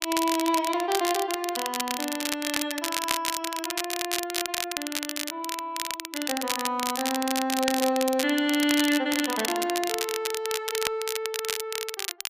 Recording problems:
crackle; vinyl, SNR 2 dB

